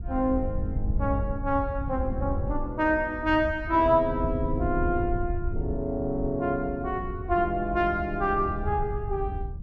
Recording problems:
wind on the microphone; below 90 Hz, SNR 7 dB

